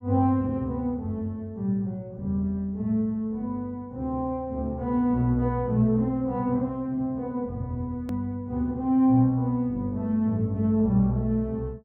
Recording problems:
low-pass filter; nothing above 7.3 kHz
hard cut with a click; at 8 s

